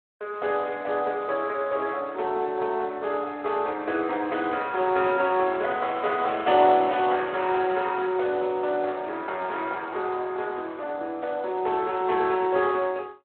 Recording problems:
phone line; 320 Hz to 3.6 kHz, Speex

